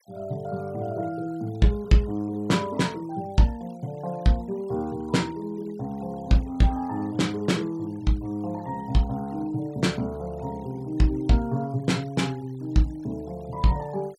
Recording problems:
noise reduction artefacts; signal-to-artefact ratio 26 dB

